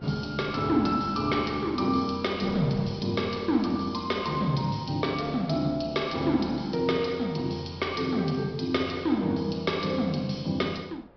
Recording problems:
treble missing; nothing above 5.5 kHz
wind on the microphone; below 760 Hz, SNR 23 dB

